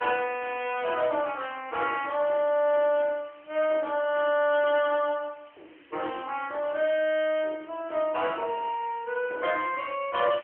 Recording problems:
telephone audio; 280 Hz to 3.2 kHz, AMR-NB
hiss; SNR 27 dB

